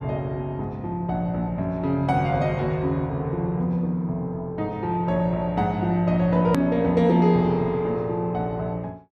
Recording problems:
edit click; at 6.5 s

